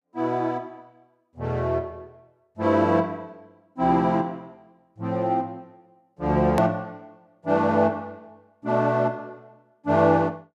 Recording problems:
hard cut with a click; at 6.5 s

